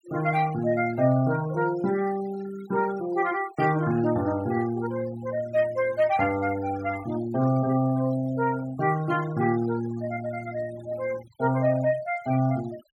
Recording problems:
denoising artefacts; signal-to-artefact ratio 18 dB

